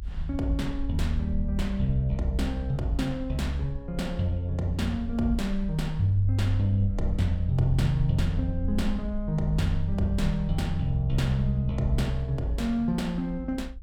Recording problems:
rumble; below 54 Hz, SNR 9 dB

